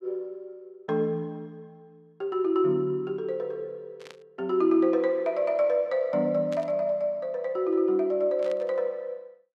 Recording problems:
burst of static; at 4 s, at 6.5 s and at 8.5 s; peak -13 dB vs average level

